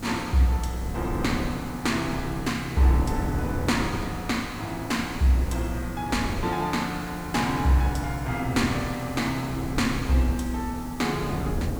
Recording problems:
background hiss; SNR 18 dB
wind on the microphone; below 310 Hz, SNR 8 dB

